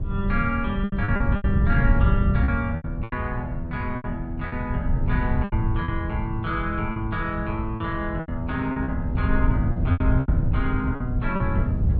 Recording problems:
wind on the microphone; below 120 Hz, SNR -2 dB
packet loss; 10% of the sound replaced, filled with repeated pitch periods

